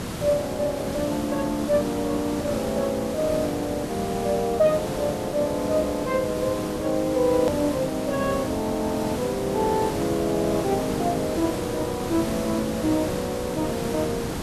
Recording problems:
background hiss; slope -5 dB per octave, SNR 6 dB
hard cut with a click; at 7.5 s

